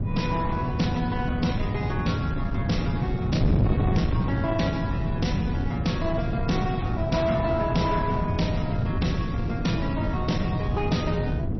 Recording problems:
lossy codec; MP3, log-spectral distance 2 dB, nothing above 5.8 kHz
distortion; soft clipping, signal-to-distortion ratio 11 dB
wind on the microphone; below 210 Hz, SNR 0 dB

